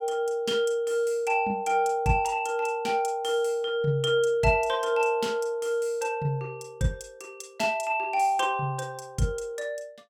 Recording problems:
none

